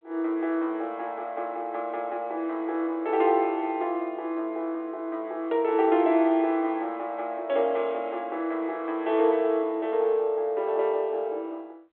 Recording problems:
telephone audio; 280 Hz to 3.6 kHz, G.726

